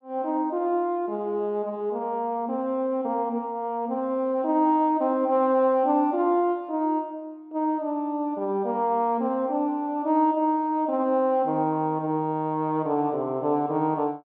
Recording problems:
none

